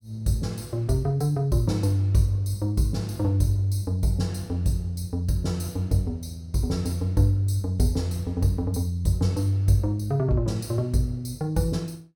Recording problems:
none

